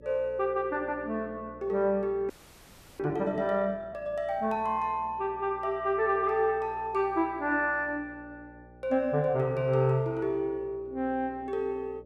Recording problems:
hum; 60 Hz, harmonics up to 600 Hz, SNR 23 dB
frozen audio; at 2.5 s for 0.5 s

